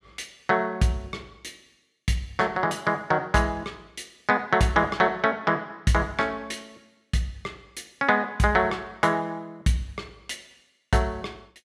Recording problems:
none

